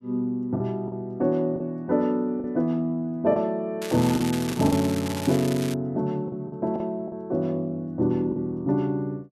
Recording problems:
lost packets; 6% of the sound replaced, filled with the last packet
crackle; from 4 to 5.5 s; loose cable, SNR 11 dB

